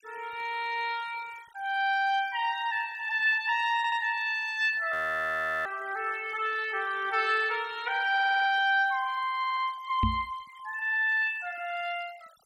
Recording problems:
noise reduction artefacts; signal-to-artefact ratio 23 dB
audio stuttering; at 4 s, at 8 s and at 9.5 s
frozen audio; at 5 s for 0.5 s
microphone bump; at 10 s; peak +3 dB vs average level

